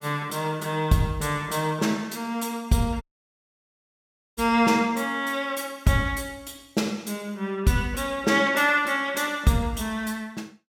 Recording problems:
dropout; at 3 s for 1.5 s

